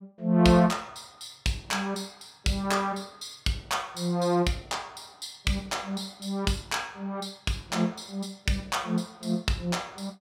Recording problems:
none

